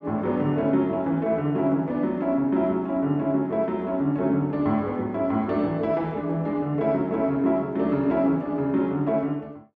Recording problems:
none

